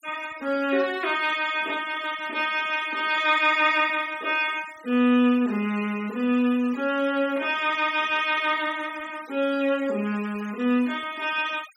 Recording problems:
denoising artefacts; signal-to-artefact ratio 22 dB

